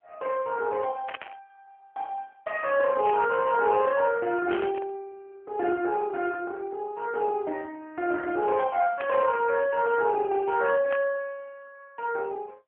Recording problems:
phone line; 170 Hz to 3.2 kHz, AMR-NB
static burst; 5 times, first at 1 s; peak -5 dB vs average level

